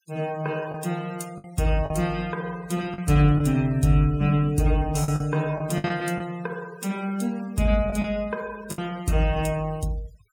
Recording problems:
noise reduction artefacts; signal-to-artefact ratio 22 dB
packet loss; 5% of the sound replaced, filled with the last packet

